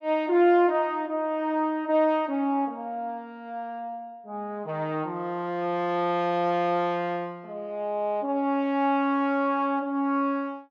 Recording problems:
none

